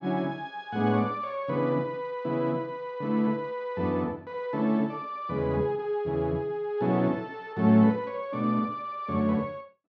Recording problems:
none

